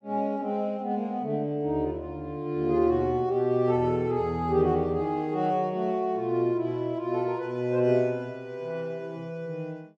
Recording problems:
none

